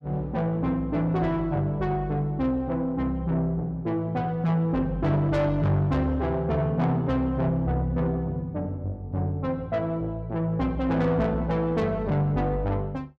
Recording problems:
distorted audio; soft clipping, signal-to-distortion ratio 12 dB

